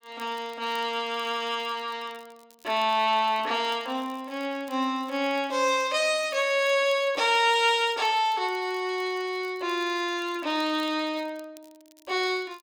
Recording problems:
crackle; vinyl, SNR 29 dB

